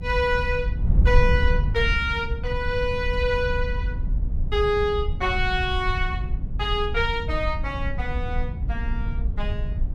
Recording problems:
hum; 50 Hz, harmonics up to 300 Hz, SNR 15 dB
wind noise; below 74 Hz, SNR 2 dB

